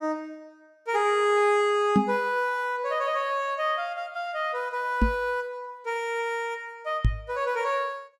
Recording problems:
knock on the microphone; at 2 s, at 5 s and at 7 s; peak +9 dB vs average level

